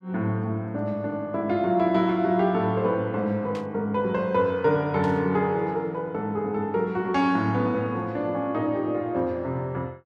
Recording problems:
static burst; at 3.5 s and at 5 s; peak -13 dB vs average level

